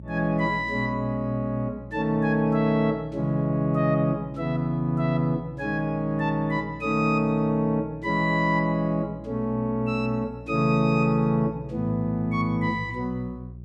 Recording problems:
electrical hum; 60 Hz, harmonics up to 420 Hz, SNR 18 dB

